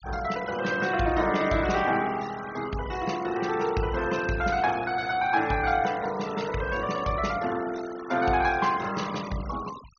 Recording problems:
treble missing; nothing above 6.4 kHz
noise reduction artefacts; signal-to-artefact ratio 16 dB

